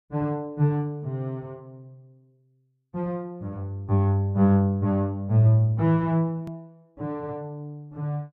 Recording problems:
click at an edit; at 6.5 s

